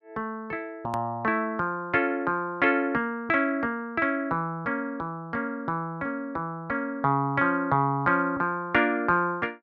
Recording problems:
edit click; at 1 s

